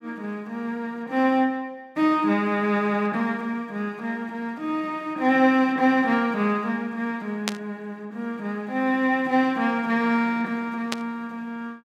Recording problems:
burst of static; at 7.5 s and at 11 s; peak +3 dB vs average level

